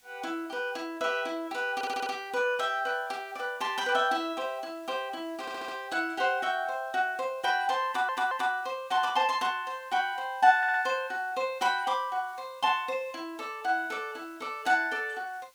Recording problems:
background hiss; slope +1 dB per octave, SNR 29 dB
audio stuttering; 4 times, first at 2 s

